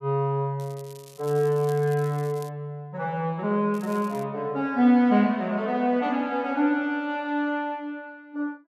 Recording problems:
crackle; from 0.5 to 2.5 s and at 3.5 s; loose cable, SNR 24 dB

